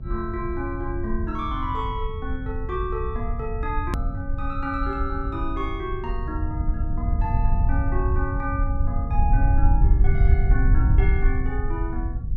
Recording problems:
hum; 60 Hz, harmonics up to 660 Hz, SNR 17 dB
low-frequency rumble; below 74 Hz, SNR -5 dB
hard cut with a click; at 4 s

